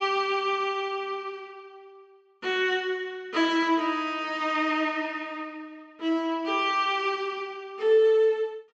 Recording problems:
treble cut off; nothing above 8 kHz

